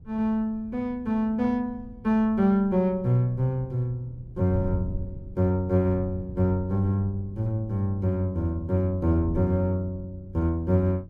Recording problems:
wind on the microphone; below 120 Hz, SNR 16 dB

